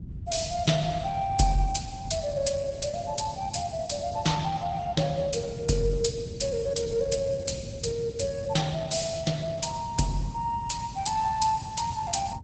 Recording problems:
codec artefacts; Opus, log-spectral distance 4 dB, nothing above 8 kHz
rumble; below 160 Hz, SNR 10 dB

